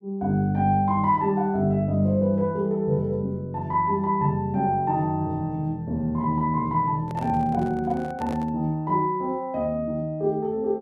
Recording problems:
handling noise; from 7 to 8.5 s; peak -8 dB vs average level

